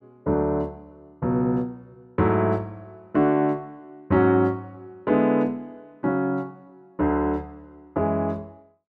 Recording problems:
none

